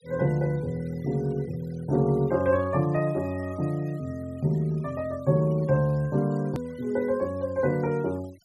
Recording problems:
denoising artefacts; signal-to-artefact ratio 27 dB
hard cut with a click; at 6.5 s

